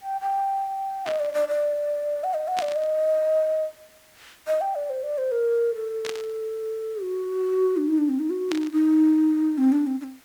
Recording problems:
hiss; slope -1 dB per octave, SNR 28 dB
static burst; 4 times, first at 1 s; peak -3 dB vs average level

